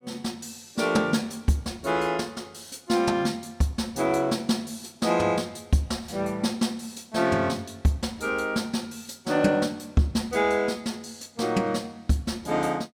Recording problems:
none

